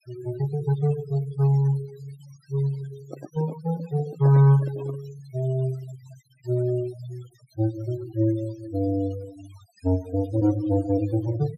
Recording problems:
noise reduction artefacts; signal-to-artefact ratio 20 dB
handling noise; from 3 to 5 s; peak -7 dB vs average level

